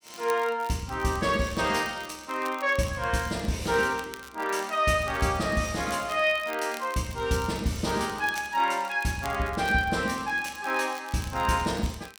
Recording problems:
crackling; vinyl, SNR 19 dB

